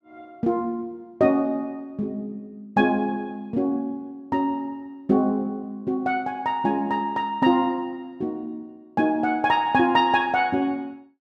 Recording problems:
none

